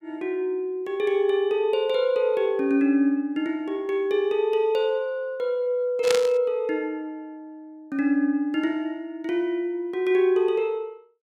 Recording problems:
burst of static; at 6 s; peak +2 dB vs average level

